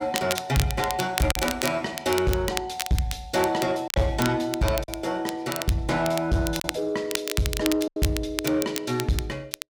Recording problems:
distorted audio; soft clipping, signal-to-distortion ratio 10 dB
crackling; vinyl, SNR 7 dB
packet loss; 3% of the sound replaced, filled with silence

